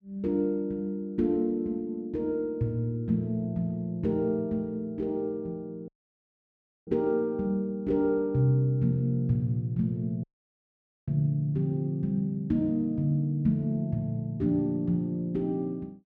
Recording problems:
audio cutting out; at 6 s for 1 s and at 10 s for 1 s

